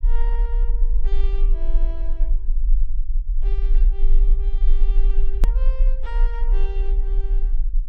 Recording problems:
rumble; below 36 Hz, strongest tone 20 Hz, SNR -17 dB
click at an edit; at 5.5 s

